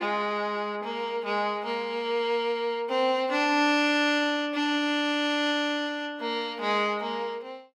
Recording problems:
none

